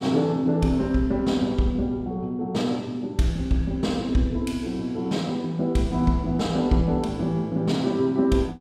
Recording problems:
none

